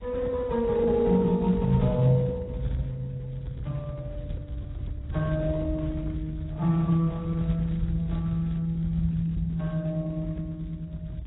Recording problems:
codec artefacts; Speex, then AAC, log-spectral distance 2 dB, nothing above 10.7 kHz
low-frequency rumble; below 110 Hz, SNR 9 dB

